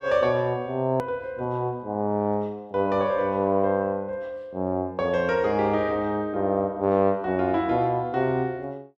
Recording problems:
click at an edit; at 1 s

